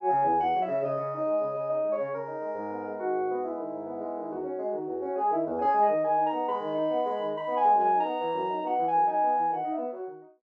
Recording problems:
none

